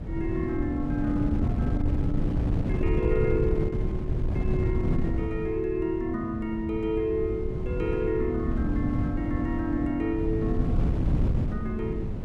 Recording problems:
wind on the microphone; below 170 Hz, SNR 0 dB

